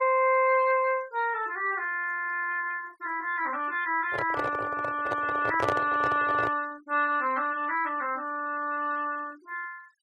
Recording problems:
denoising artefacts; signal-to-artefact ratio 23 dB
handling noise; from 4 to 6.5 s; peak +3 dB vs average level

